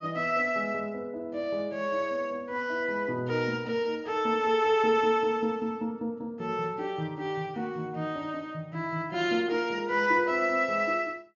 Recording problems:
low-pass filter; nothing above 7.2 kHz

